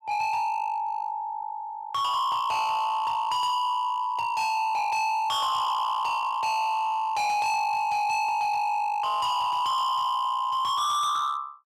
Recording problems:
distorted audio; hard clipping, signal-to-distortion ratio 7 dB

